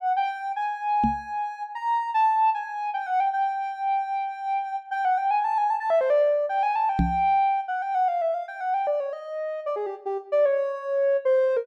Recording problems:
microphone bump; at 1 s and at 7 s; peak +5 dB vs average level

